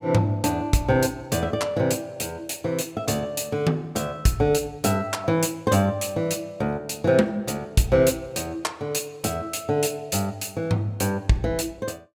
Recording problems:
none

